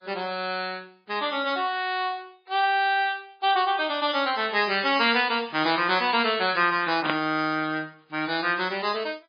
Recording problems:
lossy compression; MP3, log-spectral distance 5 dB, nothing above 5 kHz
static burst; at 7 s; peak +3 dB vs average level

